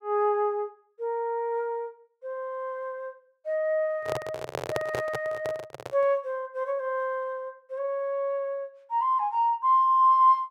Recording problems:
handling noise; from 4 to 6 s; peak +1 dB vs average level

